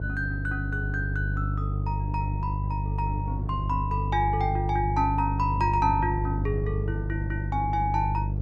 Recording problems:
hum; 50 Hz, harmonics up to 500 Hz, SNR 0 dB
wind noise; below 270 Hz, SNR 14 dB

